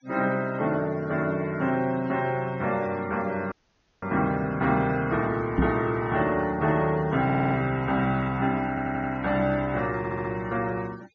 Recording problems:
low-pass filter; nothing above 6.7 kHz
noise reduction artefacts; signal-to-artefact ratio 23 dB
dropout; at 3.5 s
knock on the microphone; at 5.5 s; peak +6 dB vs average level
audio stuttering; at 7 s, at 8.5 s and at 10 s

